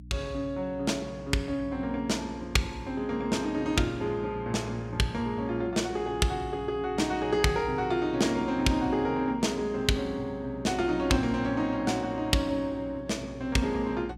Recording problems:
electrical hum; 60 Hz, harmonics up to 300 Hz, SNR 18 dB

